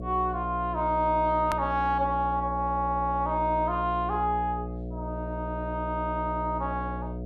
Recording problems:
hum; 60 Hz, harmonics up to 720 Hz, SNR 8 dB
click at an edit; at 1.5 s

